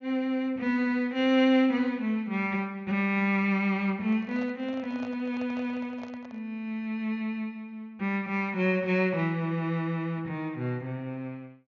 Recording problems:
treble missing; nothing above 6.8 kHz
microphone handling noise; from 4 to 6.5 s; peak -11 dB vs average level

